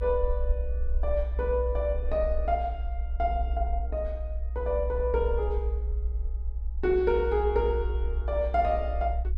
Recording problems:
rumble; below 62 Hz, strongest tone 60 Hz, SNR 2 dB

